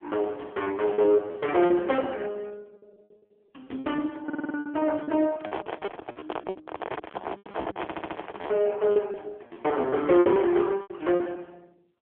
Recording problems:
telephone audio; 260 Hz to 3.8 kHz, AMR-NB
distorted audio; hard clipping, signal-to-distortion ratio 11 dB
packet loss; 14% of the sound replaced, filled with repeated pitch periods
stutter; at 4.5 s and at 8 s
microphone handling noise; from 5.5 to 8.5 s; peak -1 dB vs average level

